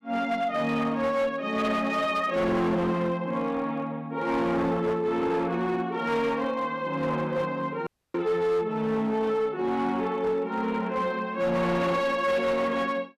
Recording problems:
distorted audio; hard clipping, signal-to-distortion ratio 12 dB
audio cutting out; at 8 s

